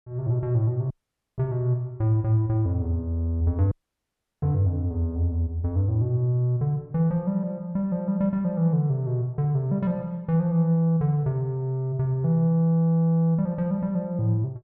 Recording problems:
audio cutting out; at 1 s and at 3.5 s for 0.5 s

